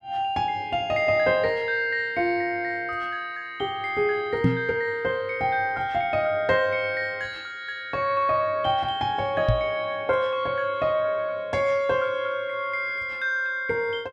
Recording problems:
microphone bump; at 4.5 s and at 9.5 s; peak +7 dB vs average level

